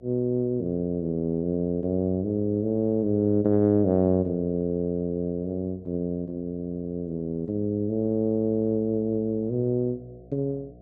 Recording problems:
hum; 60 Hz, harmonics up to 720 Hz, SNR 26 dB

